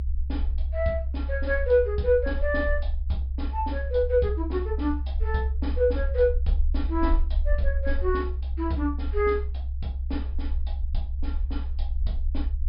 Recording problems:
low-pass filter; nothing above 5.5 kHz
rumble; below 68 Hz, SNR 2 dB

